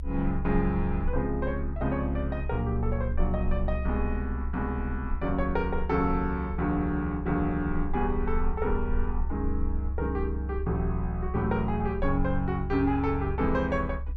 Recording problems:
rumble; below 68 Hz, SNR 4 dB

